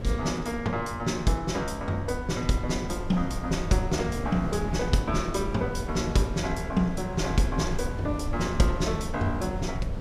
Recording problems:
wind noise; below 160 Hz, SNR 7 dB

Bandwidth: 15 kHz